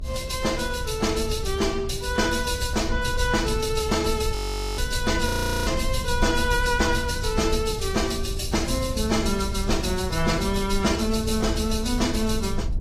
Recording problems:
lossy codec; AAC, log-spectral distance 4 dB
low-frequency rumble; below 72 Hz, SNR 7 dB
frozen audio; at 4.5 s and at 5.5 s

